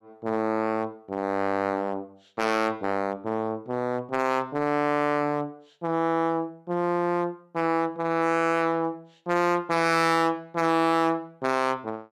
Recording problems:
distorted audio; hard clipping, uneven, signal-to-distortion ratio 11 dB

